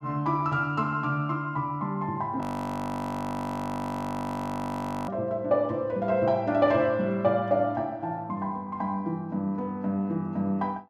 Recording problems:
audio freezing; at 2.5 s for 2.5 s

